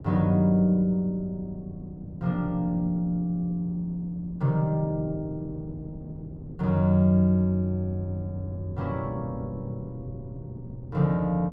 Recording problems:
wind on the microphone; below 250 Hz, SNR 16 dB

